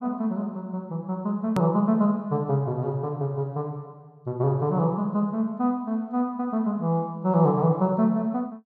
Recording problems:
hard cut with a click; at 1.5 s

